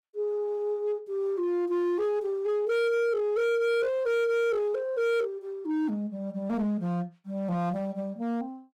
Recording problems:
distorted audio; hard clipping, signal-to-distortion ratio 6 dB

